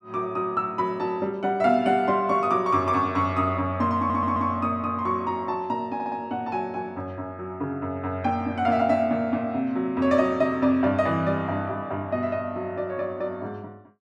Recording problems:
stutter; at 4 s and at 6 s

